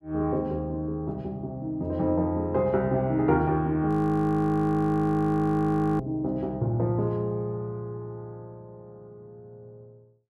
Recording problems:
frozen audio; at 4 s for 2 s

